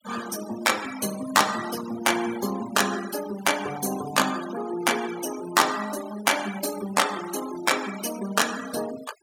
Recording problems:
noise reduction artefacts; signal-to-artefact ratio 12 dB

